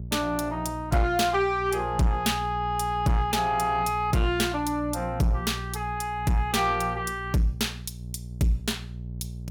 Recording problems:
distortion; soft clipping, signal-to-distortion ratio 11 dB
hum; 60 Hz, harmonics up to 420 Hz, SNR 11 dB

